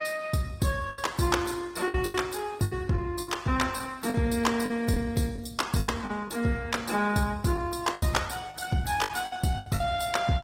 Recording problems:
codec artefacts; Opus, log-spectral distance 5 dB, nothing above 16 kHz
lost packets; 10% of the sound replaced, filled with the last packet

